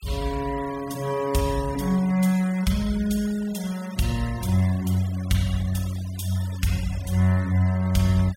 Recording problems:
denoising artefacts; signal-to-artefact ratio 18 dB

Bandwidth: 16 kHz